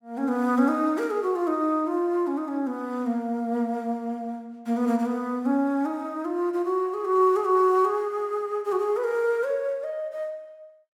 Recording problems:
none

